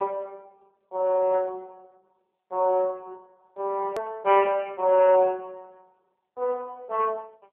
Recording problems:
phone line; 280 Hz to 3.1 kHz, AMR-NB
hard cut with a click; at 4 s

